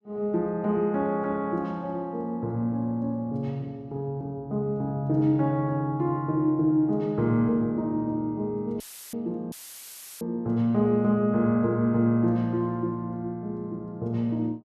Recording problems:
dropout; at 9 s and at 9.5 s for 0.5 s; filled with static

